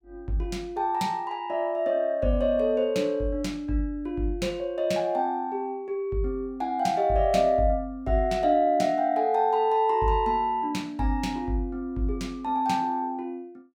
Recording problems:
none

